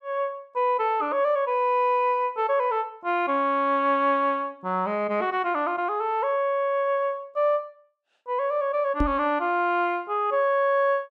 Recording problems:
knock on the microphone; at 9 s; peak +3 dB vs average level

